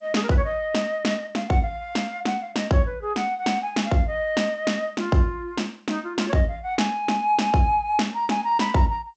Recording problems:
lossy compression; G.722, log-spectral distance 2 dB, nothing above 7.8 kHz

